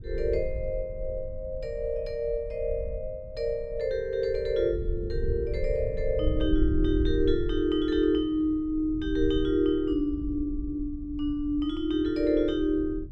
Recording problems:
low-frequency rumble; below 70 Hz, SNR 8 dB

